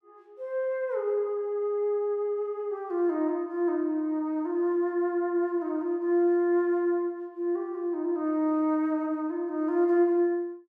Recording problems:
none

